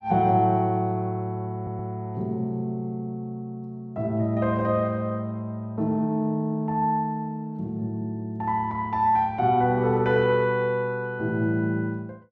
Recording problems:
stutter; at 1.5 s

